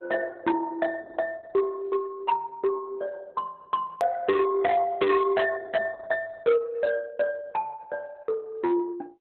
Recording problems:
lossy compression; Opus, log-spectral distance 3 dB, nothing above 13.1 kHz
distortion; hard clipping, signal-to-distortion ratio 8 dB
click at an edit; at 4 s

